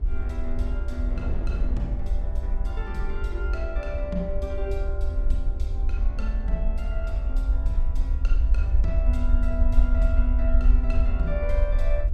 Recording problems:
rumble; below 56 Hz, SNR -9 dB
wind on the microphone; below 270 Hz, SNR 9 dB

